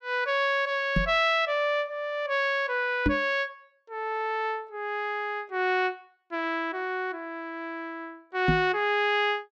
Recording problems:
microphone thump; at 1 s, at 3 s and at 8.5 s; peak +6 dB vs average level

